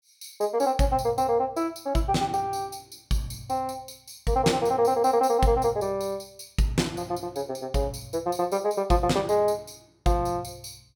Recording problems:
none

